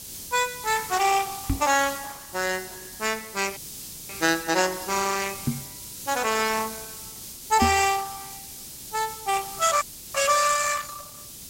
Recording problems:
lossy codec; Opus, log-spectral distance 7 dB, nothing above 12 kHz
background hiss; SNR 12 dB
microphone thump; at 1.5 s, at 5.5 s and at 7.5 s; peak +4 dB vs average level
audio cutting out; at 3.5 s for 0.5 s and at 10 s

